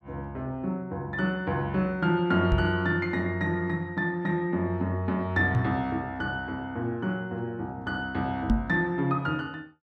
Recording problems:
microphone thump; at 2.5 s, at 5.5 s and at 8.5 s; peak +7 dB vs average level

